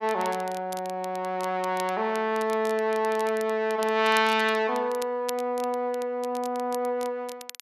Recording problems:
crackle; vinyl, SNR 18 dB

